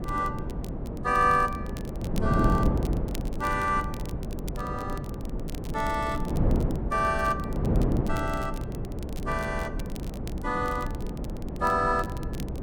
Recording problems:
wind noise; below 280 Hz, SNR 3 dB
crackling; vinyl, SNR 20 dB

